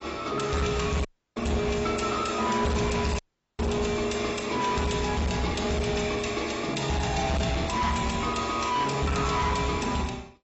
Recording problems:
codec artefacts; AAC, log-spectral distance 6 dB, nothing above 7.8 kHz
distorted audio; hard clipping, uneven, signal-to-distortion ratio 7 dB
audio cutting out; at 1 s and at 3 s

